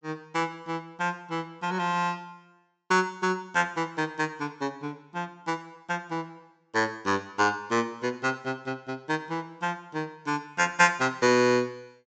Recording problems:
treble missing; nothing above 8 kHz

